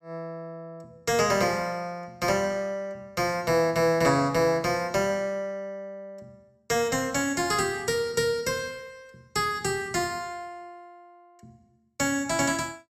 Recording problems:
none

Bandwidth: 14.5 kHz